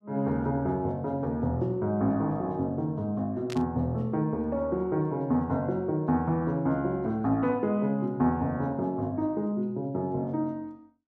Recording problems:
burst of static; at 3.5 s; peak -7 dB vs average level

